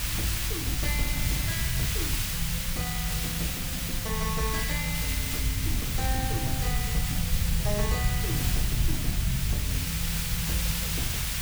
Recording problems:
background hiss; SNR -4 dB
rumble; below 110 Hz, SNR -2 dB

